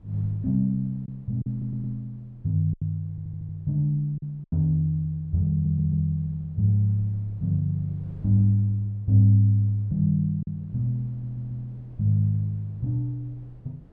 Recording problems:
wind on the microphone; below 200 Hz, SNR 26 dB
packet loss; 2% of the sound replaced, filled with silence
stutter; 4 times, first at 1.5 s

